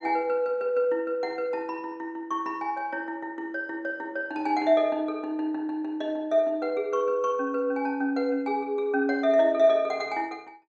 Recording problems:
none

